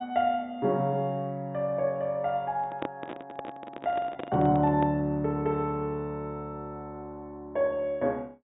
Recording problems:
treble cut off; nothing above 4 kHz
microphone handling noise; from 2.5 to 5 s; peak -1 dB vs average level

